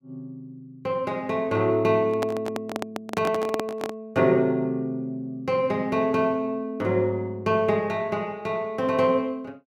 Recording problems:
handling noise; from 2 to 4 s; peak 0 dB vs average level

